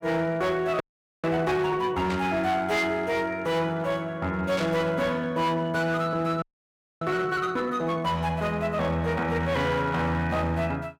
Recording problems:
distortion; hard clipping, signal-to-distortion ratio 12 dB
audio freezing; at 1 s and at 6.5 s for 0.5 s
burst of static; at 2 s and at 4.5 s; peak -4 dB vs average level

